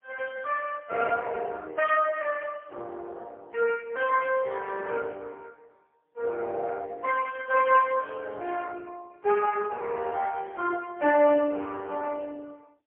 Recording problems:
phone line; 240 Hz to 2.6 kHz, AMR-NB, then MP3

